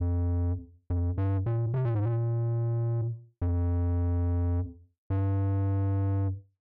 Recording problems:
distortion; soft clipping, signal-to-distortion ratio 11 dB

